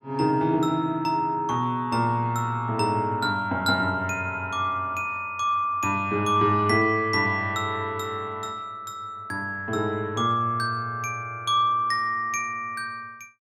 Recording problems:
none

